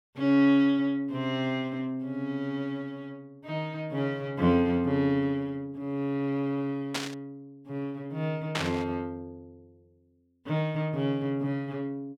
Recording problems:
static burst; at 7 s and at 8.5 s; peak +3 dB vs average level

